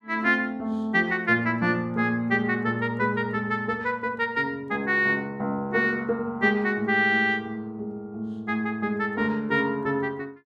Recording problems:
none

